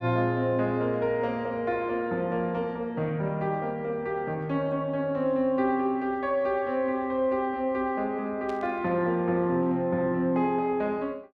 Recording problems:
static burst; at 8.5 s; peak -15 dB vs average level

